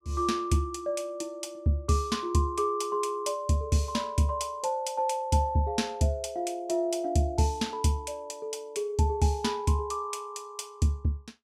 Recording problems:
none

